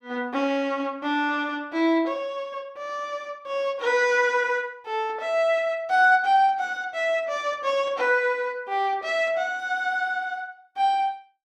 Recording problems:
none

